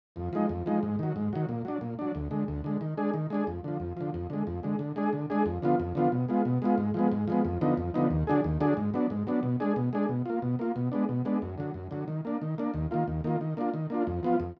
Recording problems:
none

